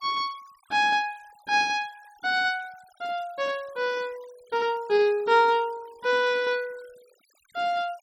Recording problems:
noise reduction artefacts; signal-to-artefact ratio 26 dB

